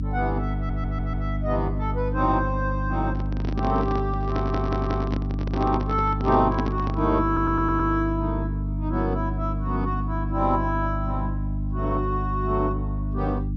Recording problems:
treble cut off; nothing above 6 kHz
hum; 50 Hz, harmonics up to 300 Hz, SNR 1 dB
audio stuttering; at 0.5 s, at 4.5 s and at 7.5 s
handling noise; from 3 to 7 s; peak +3 dB vs average level

